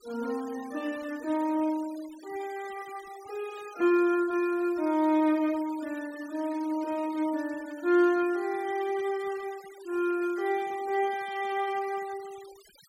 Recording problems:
denoising artefacts; signal-to-artefact ratio 21 dB

